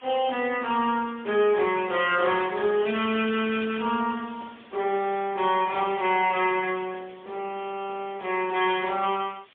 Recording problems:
telephone audio; 240 Hz to 3.4 kHz, AMR-NB, then MP3
background hiss; SNR 27 dB
crackling; at 3 s; loose cable, SNR 16 dB

